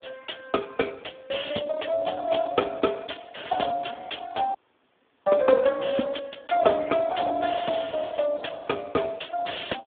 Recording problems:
phone line; 190 Hz to 2.3 kHz, Speex
frozen audio; at 4.5 s for 0.5 s

